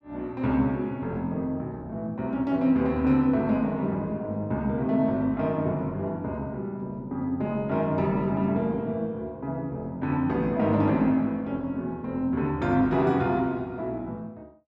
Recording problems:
none

